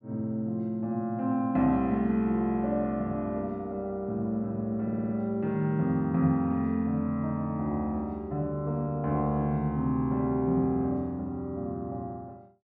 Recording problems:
audio stuttering; at 5 s

